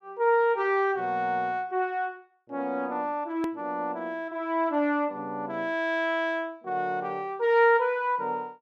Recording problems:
click at an edit; at 3.5 s

